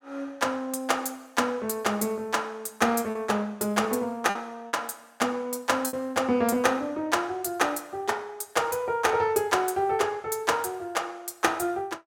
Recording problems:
packet loss; 2% of the sound replaced, filled with repeated pitch periods

